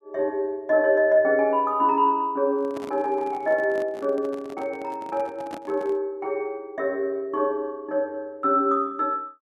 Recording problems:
microphone handling noise; from 2.5 to 6 s; peak -8 dB vs average level

